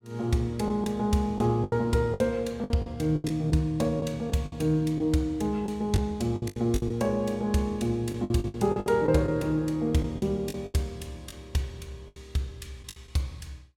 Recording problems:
lost packets; 11% of the sound replaced, filled with the last packet

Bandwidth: 17.5 kHz